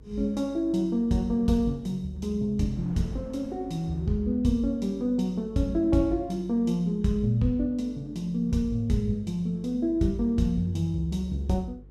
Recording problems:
hum; 50 Hz, harmonics up to 500 Hz, SNR 22 dB
wind on the microphone; below 340 Hz, SNR 24 dB

